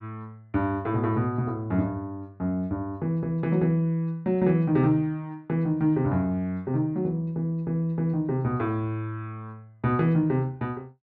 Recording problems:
none

